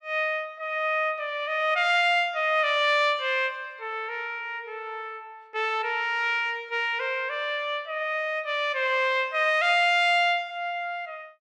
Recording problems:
none

